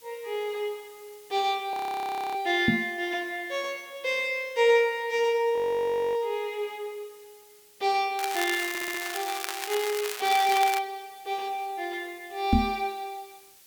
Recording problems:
hiss; SNR 25 dB
frozen audio; at 1.5 s for 0.5 s and at 5.5 s for 0.5 s
microphone bump; at 2.5 s and at 13 s; peak +8 dB vs average level
crackling; from 8 to 11 s; loose cable, SNR 6 dB
stutter; at 8.5 s

